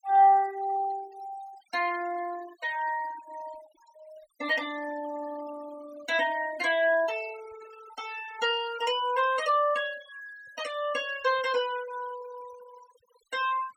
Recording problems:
denoising artefacts; signal-to-artefact ratio 18 dB

